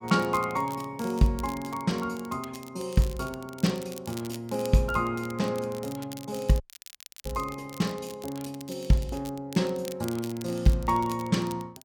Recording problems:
crackle; vinyl, SNR 17 dB
audio cutting out; at 6.5 s for 0.5 s

